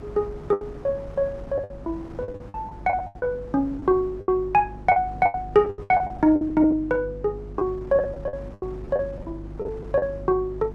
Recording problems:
electrical hum; 50 Hz, harmonics up to 350 Hz, SNR 17 dB
wind noise; below 500 Hz, SNR 20 dB
packet loss; 13% of the sound replaced, filled with the last packet

